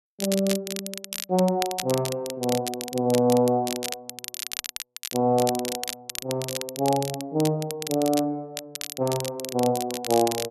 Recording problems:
crackle; vinyl, SNR 8 dB

